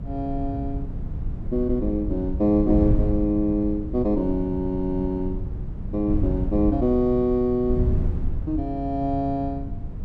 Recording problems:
wind on the microphone; below 110 Hz, SNR 5 dB

